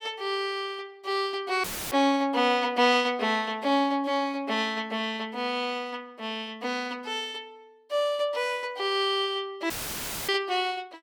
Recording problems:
audio cutting out; at 1.5 s and at 9.5 s for 0.5 s; filled with static

